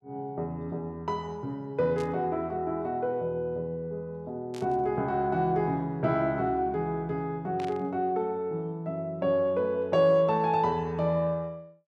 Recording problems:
static burst; at 2 s, at 4.5 s and at 7.5 s; peak -11 dB vs average level

